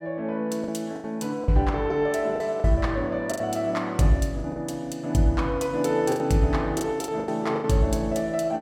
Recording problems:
lost packets; 8% of the sound replaced, filled with the last packet

